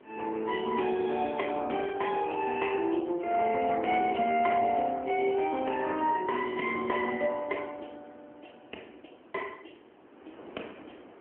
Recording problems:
telephone audio; 260 Hz to 3.1 kHz, AMR-NB
wind noise; below 810 Hz, SNR 22 dB

